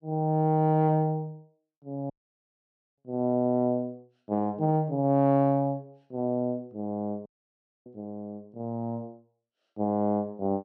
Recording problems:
dropout; at 2 s for 1 s and at 7.5 s for 0.5 s

